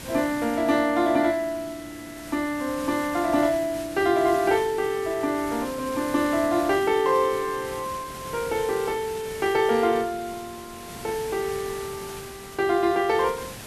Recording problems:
background hiss; slope -2 dB per octave, SNR 15 dB

